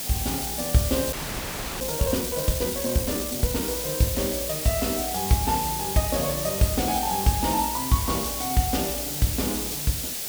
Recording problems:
background hiss; SNR 2 dB
audio freezing; at 1 s for 0.5 s

